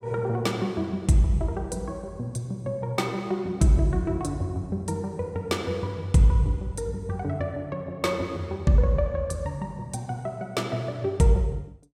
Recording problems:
none

